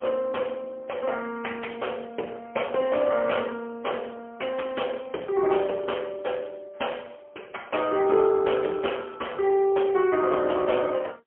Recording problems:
phone line; 280 Hz to 3.2 kHz, AMR-NB, then MP3

